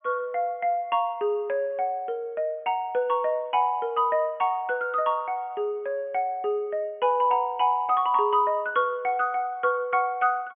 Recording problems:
treble missing; nothing above 3.2 kHz

